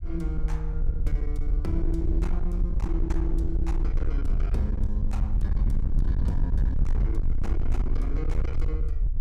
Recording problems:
distortion; hard clipping, signal-to-distortion ratio 8 dB
rumble; below 60 Hz, SNR -6 dB

